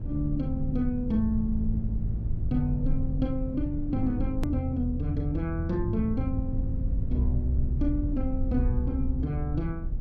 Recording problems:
low-frequency rumble; below 84 Hz, SNR 4 dB
hard cut with a click; at 4.5 s

